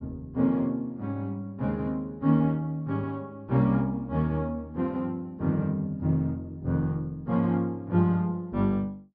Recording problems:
treble cut off; nothing above 5.5 kHz

